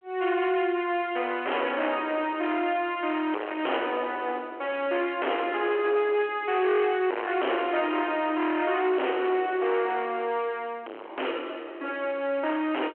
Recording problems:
telephone audio; 320 Hz to 3.2 kHz, G.726
distorted audio; hard clipping, uneven, signal-to-distortion ratio 5 dB

